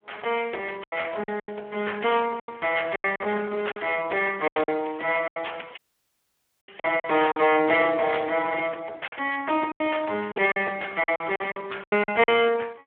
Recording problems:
telephone audio; 340 Hz to 3.3 kHz, Speex
packet loss; 11% of the sound replaced, filled with silence
dropout; at 6 s for 1 s

